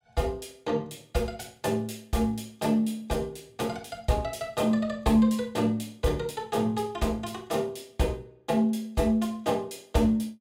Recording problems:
none

